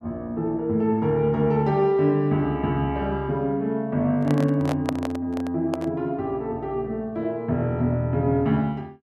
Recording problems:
microphone handling noise; from 4 to 6 s; peak +1 dB vs average level

